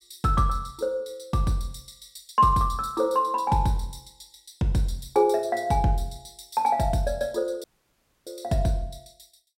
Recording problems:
dropout; at 7.5 s for 0.5 s

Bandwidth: 16 kHz